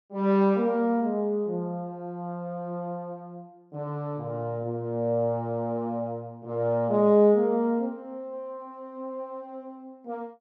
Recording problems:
none

